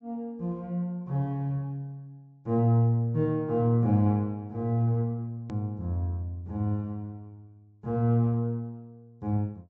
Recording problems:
treble cut off; nothing above 8 kHz
hard cut with a click; at 5.5 s

